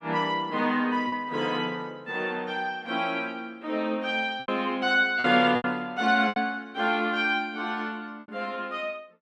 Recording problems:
packet loss; 4% of the sound replaced, filled with repeated pitch periods

